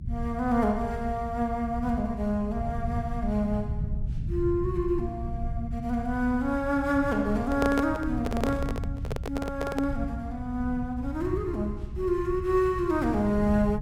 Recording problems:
rumble; below 120 Hz, SNR 7 dB
handling noise; from 7.5 to 10 s; peak +3 dB vs average level

